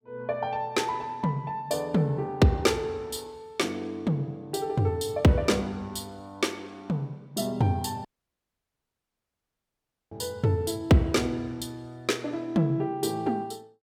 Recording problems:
dropout; at 8 s for 2 s

